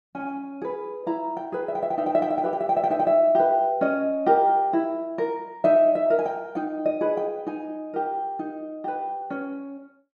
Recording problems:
none

